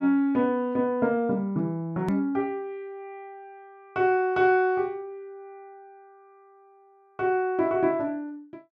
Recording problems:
hard cut with a click; at 2 s

